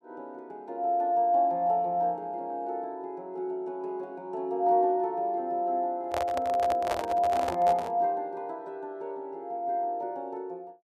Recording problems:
handling noise; from 6 to 8 s; peak +2 dB vs average level

